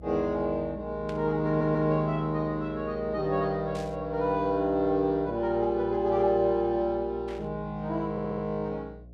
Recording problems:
hum; 60 Hz, harmonics up to 660 Hz, SNR 18 dB
static burst; at 1 s, at 4 s and at 7.5 s; peak -13 dB vs average level
stutter; at 1.5 s and at 8 s

